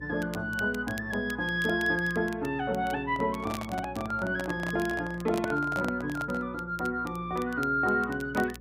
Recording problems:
electrical hum; 60 Hz, harmonics up to 540 Hz, SNR 19 dB
crackle; vinyl, SNR 20 dB
handling noise; from 3 to 6.5 s; peak 0 dB vs average level

